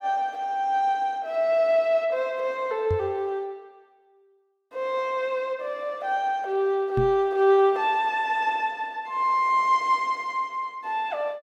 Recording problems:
microphone bump; at 3 s and at 7 s; peak 0 dB vs average level

